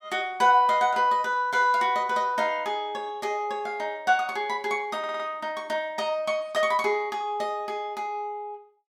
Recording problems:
audio stuttering; at 5 s

